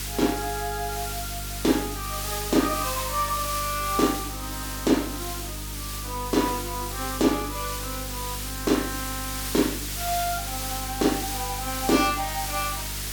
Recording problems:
mains hum; 50 Hz, harmonics up to 450 Hz, SNR 10 dB
hiss; slope +2 dB per octave, SNR 4 dB

